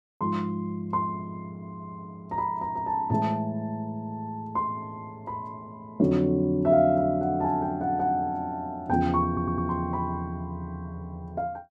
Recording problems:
audio stuttering; at 9.5 s

